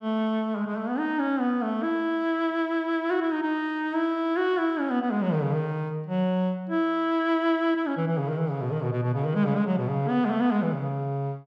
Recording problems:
none

